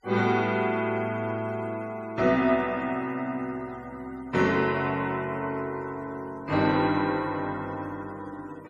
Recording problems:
noise reduction artefacts; signal-to-artefact ratio 26 dB

